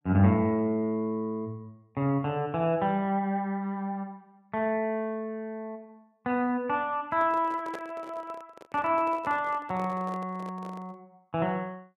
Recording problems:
microphone handling noise; from 7 to 11 s; peak -6 dB vs average level

